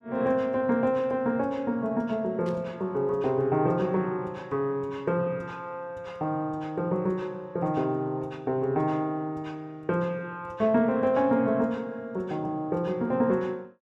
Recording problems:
static burst; at 2.5 s; peak -15 dB vs average level

